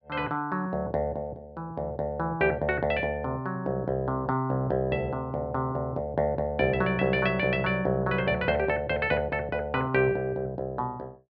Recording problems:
none

